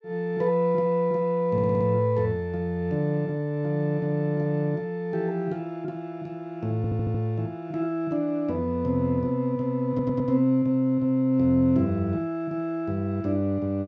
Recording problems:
stutter; at 1.5 s, at 7 s and at 10 s

